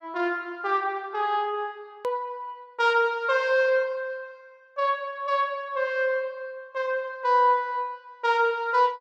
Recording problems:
edit click; at 2 s

